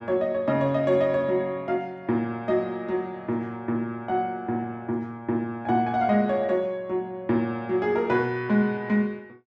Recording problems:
none

